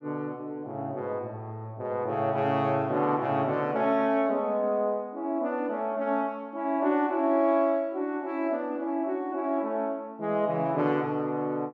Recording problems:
none

